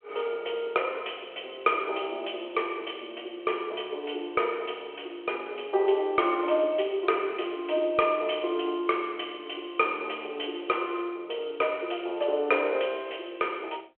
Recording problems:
phone line; 300 Hz to 3.3 kHz, G.726

